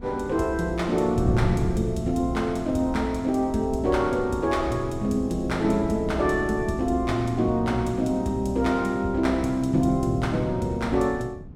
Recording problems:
wind noise; below 180 Hz, SNR 11 dB

